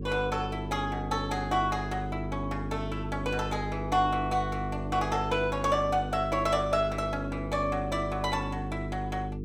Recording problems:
hum; 50 Hz, harmonics up to 450 Hz, SNR 6 dB

